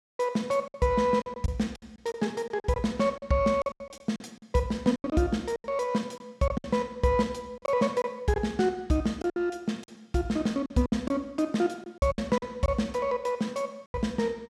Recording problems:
lost packets; 11% of the sound replaced, filled with silence

